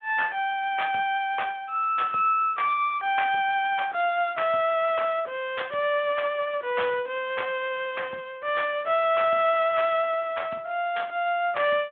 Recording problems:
telephone audio; 300 Hz to 3.4 kHz, Speex

